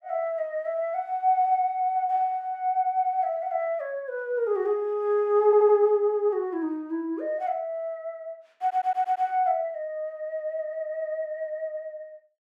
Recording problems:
audio stuttering; at 5.5 s and at 8.5 s

